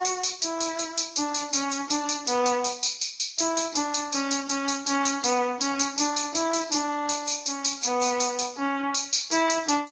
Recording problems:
codec artefacts; Speex, then Vorbis, log-spectral distance 12 dB, nothing above 6.9 kHz

